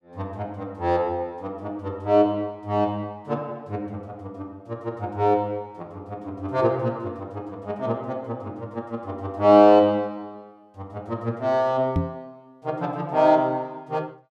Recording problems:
microphone thump; at 12 s; peak +4 dB vs average level

